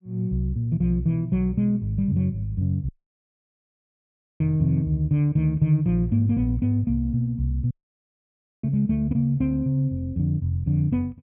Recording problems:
audio cutting out; at 3 s for 1.5 s and at 7.5 s for 1 s

